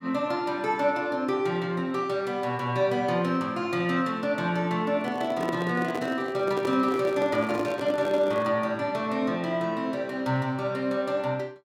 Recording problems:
microphone handling noise; from 5 to 8.5 s; peak -1 dB vs average level

